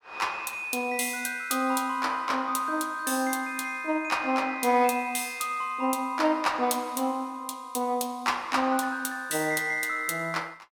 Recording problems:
none

